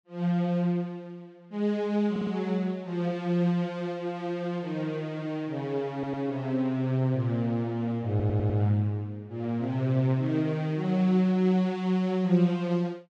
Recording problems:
stutter; at 2 s, at 6 s and at 8 s

